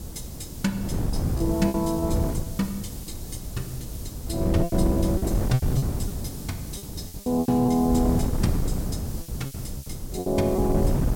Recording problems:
hiss; slope +6 dB per octave, SNR 14 dB
wind noise; below 200 Hz, SNR 3 dB
lost packets; 10% of the sound replaced, filled with repeated pitch periods

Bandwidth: 16.5 kHz